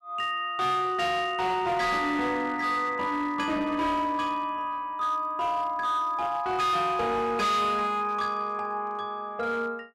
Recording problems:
distortion; hard clipping, signal-to-distortion ratio 11 dB

